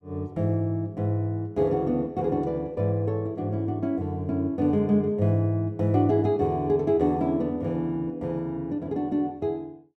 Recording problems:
none

